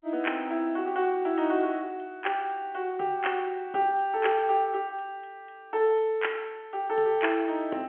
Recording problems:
phone line; 280 Hz to 3.3 kHz, G.711

